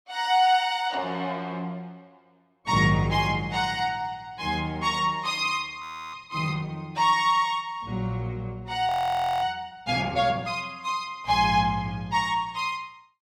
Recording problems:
frozen audio; at 6 s and at 9 s for 0.5 s

